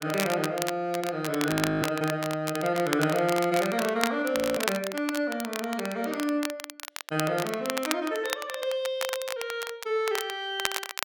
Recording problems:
crackle; vinyl, SNR 6 dB
audio freezing; at 1.5 s and at 4.5 s

